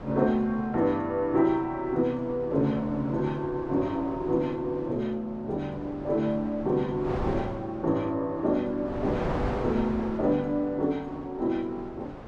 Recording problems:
wind on the microphone; below 750 Hz, SNR 11 dB

